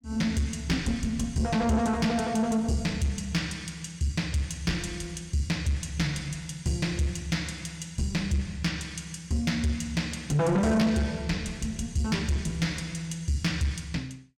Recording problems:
distortion; soft clipping, signal-to-distortion ratio 11 dB

